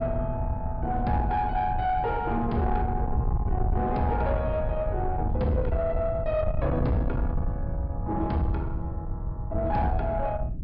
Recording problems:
low-pass filter; nothing above 5.5 kHz
distorted audio; soft clipping, signal-to-distortion ratio 10 dB
rumble; below 120 Hz, SNR 7 dB
wind on the microphone; below 100 Hz, SNR 4 dB

